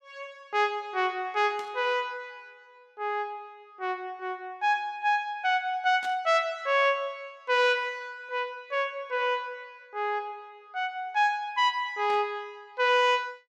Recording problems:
burst of static; at 1.5 s, at 6 s and at 12 s; peak -11 dB vs average level

